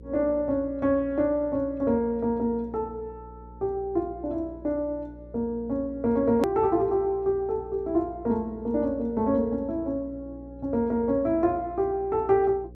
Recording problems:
mains hum; 60 Hz, harmonics up to 540 Hz, SNR 20 dB
edit click; at 6.5 s

